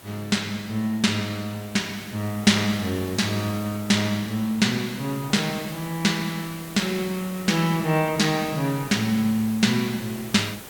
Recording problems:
background hiss; slope -4 dB per octave, SNR 16 dB

